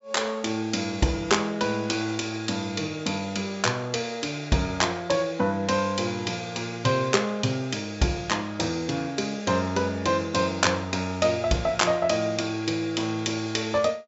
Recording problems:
treble missing; nothing above 8 kHz

